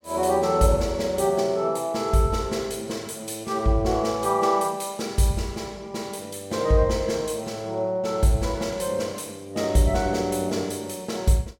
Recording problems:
none

